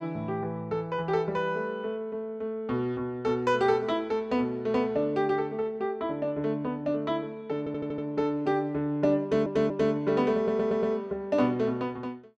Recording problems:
stutter; at 7.5 s, at 9 s and at 10 s

